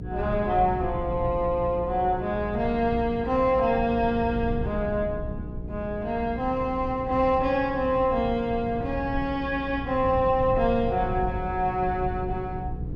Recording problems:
hum; 60 Hz, harmonics up to 480 Hz, SNR 13 dB
low-frequency rumble; below 140 Hz, SNR 11 dB

